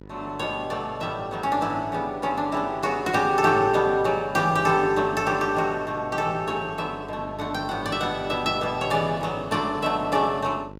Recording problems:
mains hum; 50 Hz, harmonics up to 1.5 kHz, SNR 18 dB

